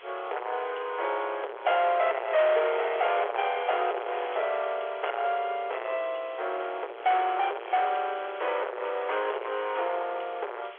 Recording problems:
telephone audio; 340 Hz to 3.5 kHz, G.711
distortion; soft clipping, signal-to-distortion ratio 6 dB
background hiss; SNR 22 dB
wind on the microphone; below 2.4 kHz, SNR 15 dB
crackling; from 3 to 5.5 s; loose cable, SNR 28 dB

